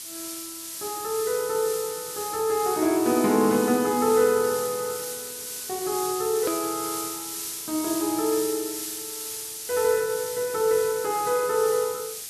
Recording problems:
background hiss; SNR 7 dB
click at an edit; at 6.5 s

